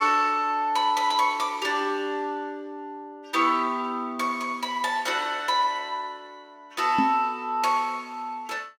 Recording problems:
knock on the microphone; at 7 s; peak +3 dB vs average level

